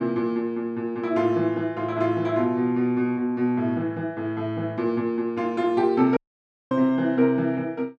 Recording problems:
audio cutting out; at 6 s for 0.5 s

